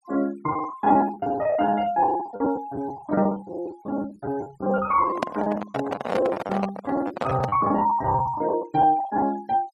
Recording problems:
noise reduction artefacts; signal-to-artefact ratio 20 dB
packet loss; 17% of the sound replaced, filled with the last packet
microphone handling noise; from 5 to 7.5 s; peak +3 dB vs average level

